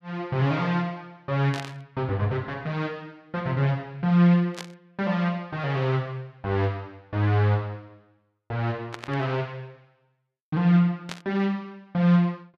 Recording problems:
burst of static; 4 times, first at 1.5 s; peak -5 dB vs average level

